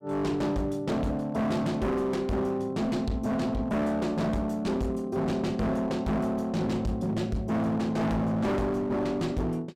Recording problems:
distorted audio; hard clipping, uneven, signal-to-distortion ratio 6 dB

